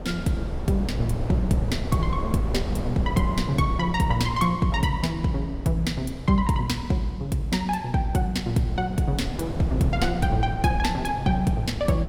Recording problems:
wind on the microphone; below 270 Hz, SNR 9 dB

